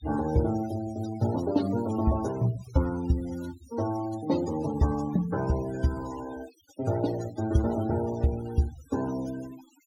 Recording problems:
noise reduction artefacts; signal-to-artefact ratio 15 dB

